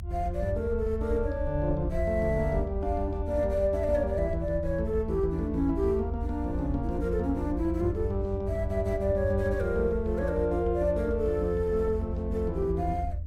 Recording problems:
low-frequency rumble; below 80 Hz, SNR 5 dB

